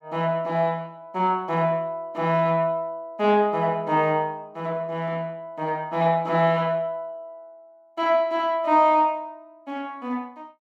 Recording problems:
none

